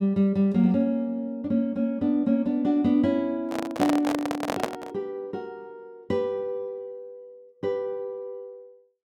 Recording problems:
microphone handling noise; from 3.5 to 5 s; peak +4 dB vs average level

